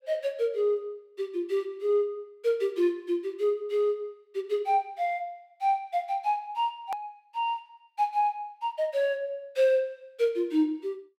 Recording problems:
hard cut with a click; at 7 s

